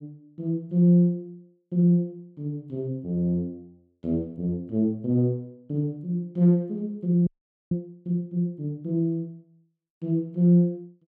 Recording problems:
audio freezing; at 7.5 s

